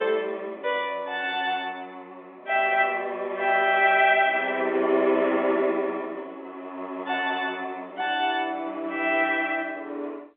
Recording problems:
telephone audio; 260 Hz to 3.7 kHz, G.711

